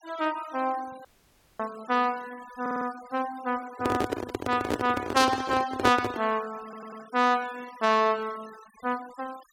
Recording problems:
noise reduction artefacts; signal-to-artefact ratio 20 dB
dropout; at 1 s for 0.5 s
stutter; at 2.5 s and at 6.5 s
microphone handling noise; from 4 to 6 s; peak +4 dB vs average level

